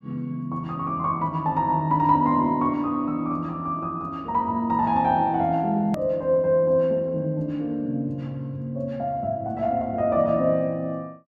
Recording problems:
click at an edit; at 6 s

